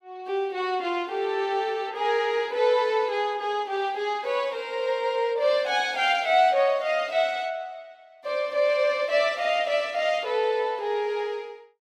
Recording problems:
none

